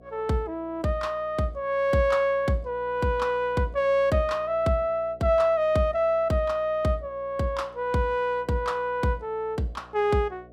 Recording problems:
hum; 60 Hz, harmonics up to 720 Hz, SNR 25 dB

